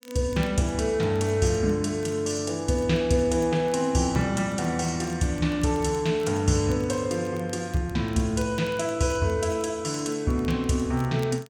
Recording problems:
crackle; vinyl, SNR 27 dB

